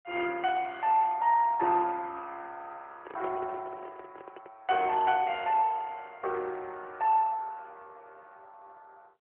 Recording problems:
phone line; 300 Hz to 3.6 kHz, AMR-NB
microphone handling noise; from 3 to 4.5 s; peak -12 dB vs average level

